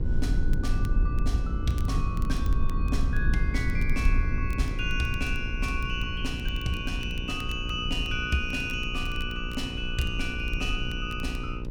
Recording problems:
hum; 60 Hz, harmonics up to 1.4 kHz, SNR 9 dB
low-frequency rumble; below 72 Hz, SNR -1 dB
crackling; vinyl, SNR 21 dB

